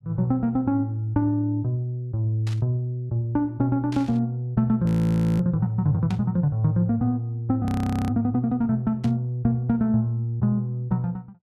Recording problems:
static burst; 4 times, first at 2.5 s; peak -12 dB vs average level
frozen audio; at 5 s for 0.5 s and at 7.5 s

